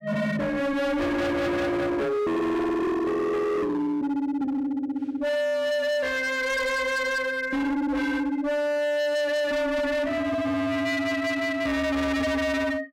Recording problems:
distortion; hard clipping, signal-to-distortion ratio 6 dB

